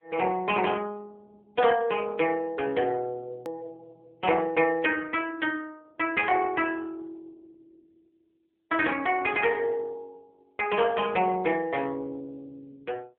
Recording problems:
telephone audio; 280 Hz to 3.1 kHz, AMR-NB
click at an edit; at 3.5 s

